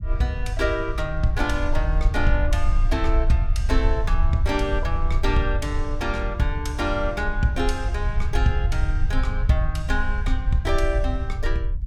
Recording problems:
low-frequency rumble; below 62 Hz, SNR 0 dB

